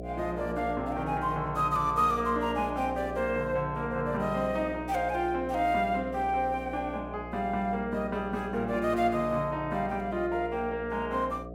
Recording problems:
hum; 60 Hz, harmonics up to 720 Hz, SNR 11 dB

